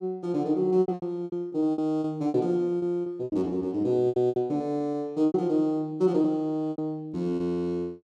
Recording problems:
packet loss; 13% of the sound replaced, filled with repeated pitch periods

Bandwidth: 13 kHz